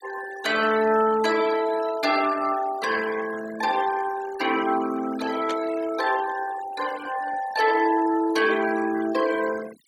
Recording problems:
denoising artefacts; signal-to-artefact ratio 14 dB
burst of static; at 5.5 s; peak -6 dB vs average level

